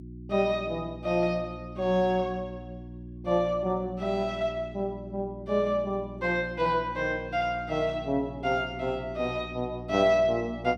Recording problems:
hum; 60 Hz, harmonics up to 360 Hz, SNR 14 dB

